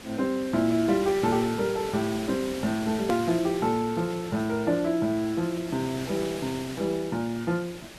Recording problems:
background hiss; SNR 12 dB
hard cut with a click; at 3 s

